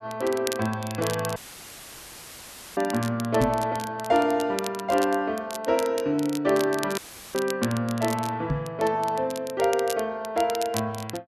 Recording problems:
crackle; vinyl, SNR 13 dB
audio cutting out; at 1.5 s for 1.5 s and at 7 s; filled with static
microphone bump; at 3.5 s and at 8.5 s; peak +3 dB vs average level

